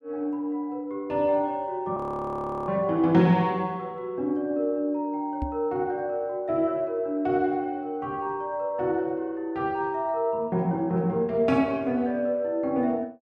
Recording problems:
frozen audio; at 2 s for 0.5 s
microphone thump; at 5.5 s; peak -2 dB vs average level

